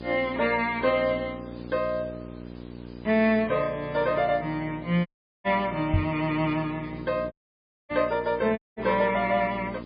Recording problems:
codec artefacts; MP3, log-spectral distance 6 dB, nothing above 4.5 kHz
hum; 60 Hz, harmonics up to 1.1 kHz, SNR 14 dB
hiss; SNR 27 dB
audio cutting out; at 5 s, at 7.5 s for 0.5 s and at 8.5 s
knock on the microphone; at 6 s; peak +5 dB vs average level

